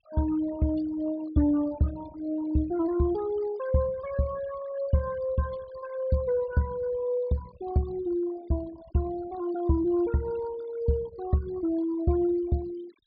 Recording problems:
treble cut off; nothing above 4.8 kHz
denoising artefacts; signal-to-artefact ratio 20 dB

